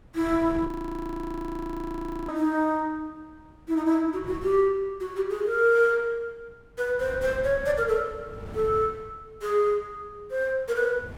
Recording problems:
wind on the microphone; below 270 Hz, SNR 17 dB
audio freezing; at 0.5 s for 1.5 s

